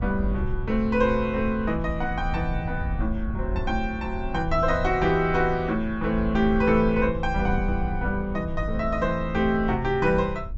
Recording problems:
low-pass filter; nothing above 8 kHz
wind noise; below 74 Hz, SNR 8 dB

